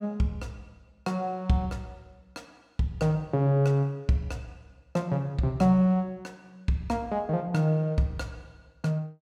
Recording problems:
none

